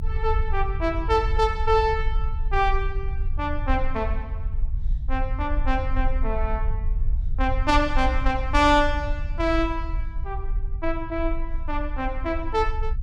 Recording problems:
low-frequency rumble; below 56 Hz, strongest tone 22 Hz, SNR 3 dB

